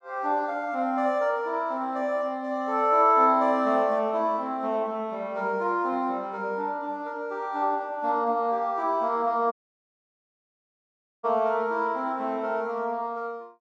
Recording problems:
audio cutting out; at 9.5 s for 1.5 s

